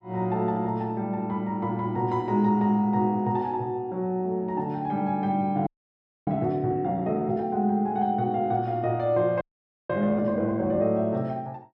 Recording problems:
frozen audio; at 5.5 s for 0.5 s and at 9.5 s

